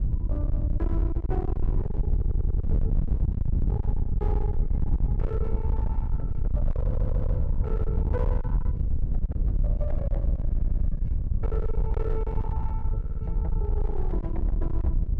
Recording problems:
distortion; hard clipping, signal-to-distortion ratio 11 dB
wind on the microphone; below 78 Hz, SNR -9 dB
stutter; 4 times, first at 2 s

